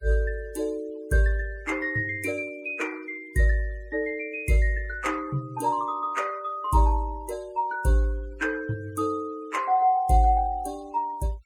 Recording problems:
noise reduction artefacts; signal-to-artefact ratio 24 dB

